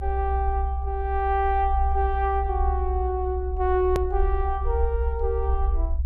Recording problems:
rumble; below 64 Hz, strongest tone 64 Hz, SNR 2 dB
click at an edit; at 4 s

